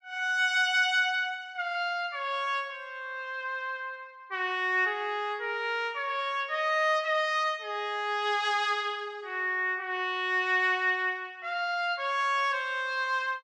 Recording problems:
none

